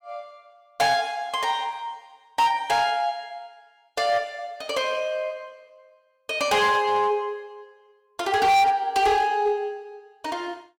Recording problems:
distortion; hard clipping, signal-to-distortion ratio 7 dB

